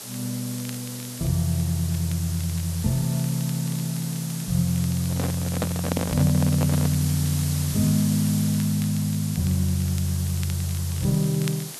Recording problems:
background hiss; SNR 9 dB
crackle; vinyl, SNR 22 dB
microphone handling noise; from 5 to 7 s; peak +1 dB vs average level

